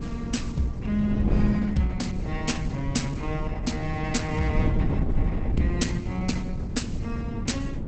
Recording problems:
lossy compression; Opus, log-spectral distance 3 dB, nothing above 8 kHz
wind noise; below 190 Hz, SNR 0 dB

